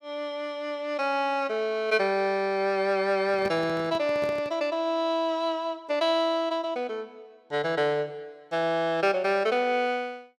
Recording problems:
handling noise; from 3 to 4.5 s; peak -6 dB vs average level

